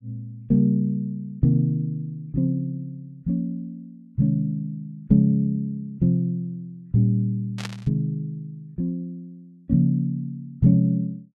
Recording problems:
burst of static; at 7.5 s; peak -5 dB vs average level

